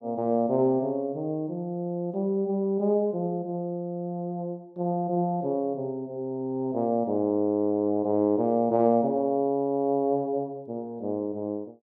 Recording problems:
none

